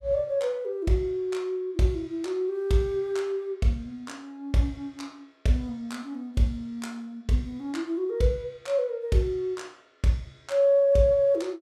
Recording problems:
none

